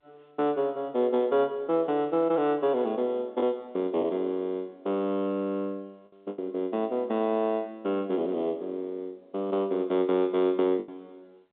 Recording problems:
telephone audio; 260 Hz to 3.6 kHz, G.711
packet loss; 1.9% of the sound replaced, filled with the last packet

